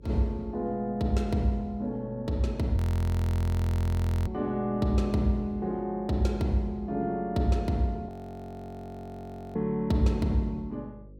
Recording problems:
hum; 50 Hz, harmonics up to 550 Hz, SNR 22 dB
audio freezing; at 3 s for 1.5 s and at 8 s for 1.5 s

